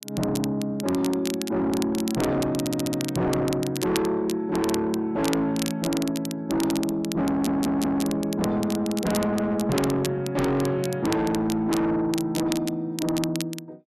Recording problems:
distorted audio; soft clipping, signal-to-distortion ratio 8 dB
crackle; vinyl, SNR 11 dB
stutter; at 2.5 s and at 7.5 s

